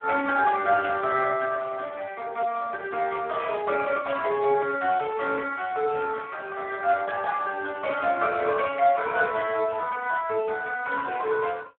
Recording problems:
phone line; 300 Hz to 2.8 kHz, Speex

